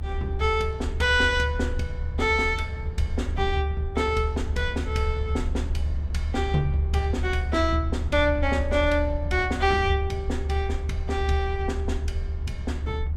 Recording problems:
low-frequency rumble; below 74 Hz, strongest tone 72 Hz, SNR 3 dB

